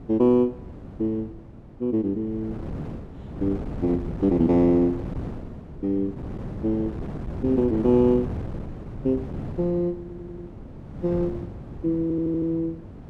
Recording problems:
wind noise; below 310 Hz, SNR 11 dB
audio stuttering; at 10 s and at 12 s

